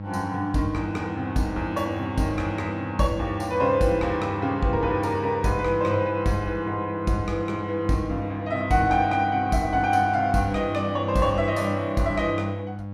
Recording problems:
hum; 50 Hz, harmonics up to 1.1 kHz, SNR 10 dB

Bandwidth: 15.5 kHz